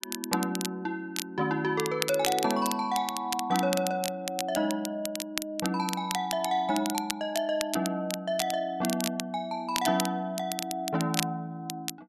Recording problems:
crackling; vinyl, SNR 6 dB

